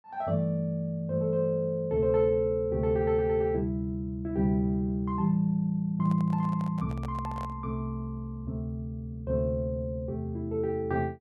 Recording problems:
handling noise; from 6 to 7.5 s; peak -10 dB vs average level

